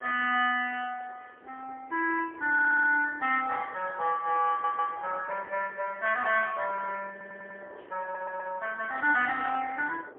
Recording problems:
phone line; 340 Hz to 3.2 kHz, AMR-NB, then MP3
wind on the microphone; below 670 Hz, SNR 22 dB
stutter; 4 times, first at 2.5 s

